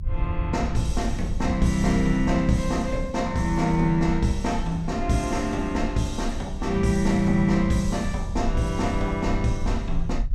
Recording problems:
low-frequency rumble; below 70 Hz, SNR 8 dB

